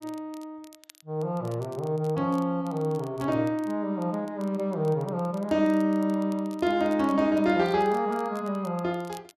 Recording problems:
crackle; vinyl, SNR 27 dB

